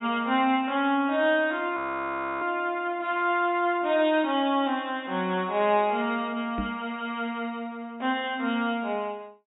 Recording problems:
low-pass filter; nothing above 4 kHz
audio freezing; at 2 s for 0.5 s
microphone thump; at 6.5 s; peak -2 dB vs average level

